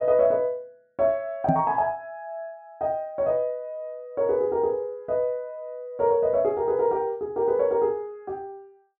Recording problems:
microphone thump; at 1.5 s; peak +5 dB vs average level

